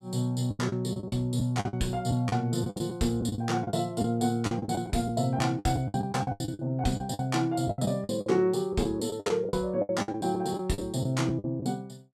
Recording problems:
packet loss; 17% of the sound replaced, filled with the last packet

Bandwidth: 14.5 kHz